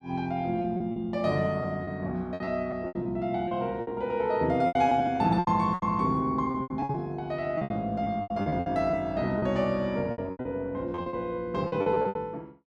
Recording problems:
lost packets; 15% of the sound replaced, filled with repeated pitch periods

